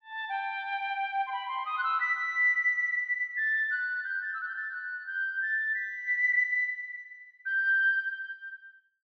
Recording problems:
none

